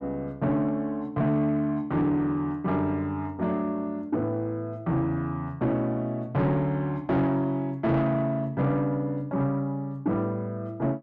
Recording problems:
distortion; soft clipping, signal-to-distortion ratio 11 dB

